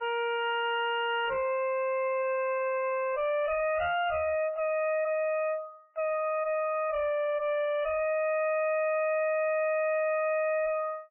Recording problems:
lossy compression; MP3, log-spectral distance 3 dB, nothing above 2.4 kHz
distorted audio; soft clipping, signal-to-distortion ratio 5 dB

